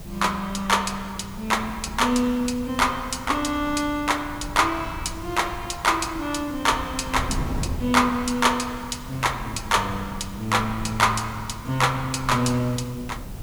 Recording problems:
background hiss; SNR 22 dB
wind noise; below 180 Hz, SNR 13 dB

